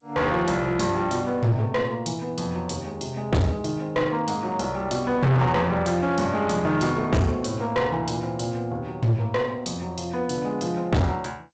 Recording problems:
lossy compression; G.722, log-spectral distance 3 dB, nothing above 7.8 kHz
distortion; hard clipping, uneven, signal-to-distortion ratio 7 dB

